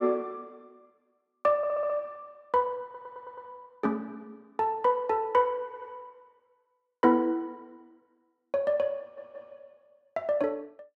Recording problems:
audio stuttering; 4 times, first at 1.5 s

